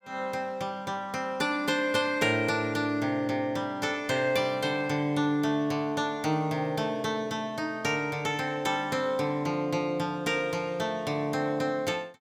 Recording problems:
none

